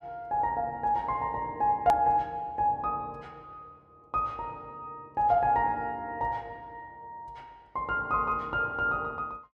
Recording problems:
click at an edit; at 2 s

